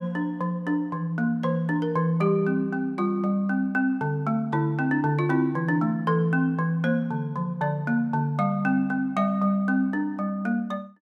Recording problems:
none

